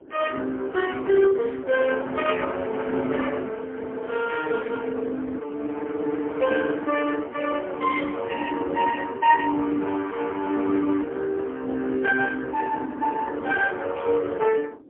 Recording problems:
phone line; 220 Hz to 2.8 kHz, AMR-NB, then MP3
wind noise; below 390 Hz, SNR 18 dB

